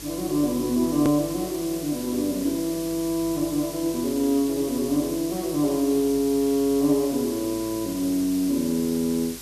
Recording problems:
electrical hum; 50 Hz, harmonics up to 400 Hz, SNR 23 dB
hiss; SNR 12 dB
edit click; at 1 s

